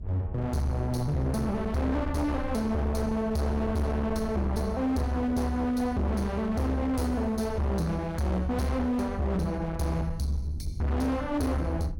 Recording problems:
distorted audio; hard clipping, uneven, signal-to-distortion ratio 7 dB
low-frequency rumble; below 120 Hz, SNR 10 dB

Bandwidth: 17 kHz